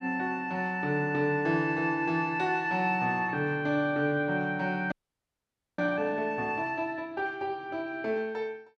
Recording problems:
frozen audio; at 5 s for 1 s

